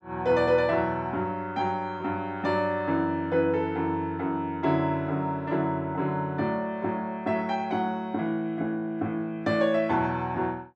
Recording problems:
none

